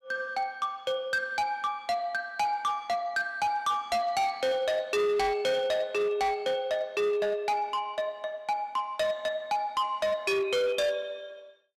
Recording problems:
distortion; hard clipping, signal-to-distortion ratio 10 dB

